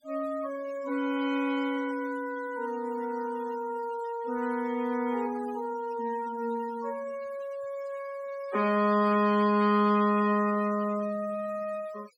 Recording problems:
denoising artefacts; signal-to-artefact ratio 19 dB

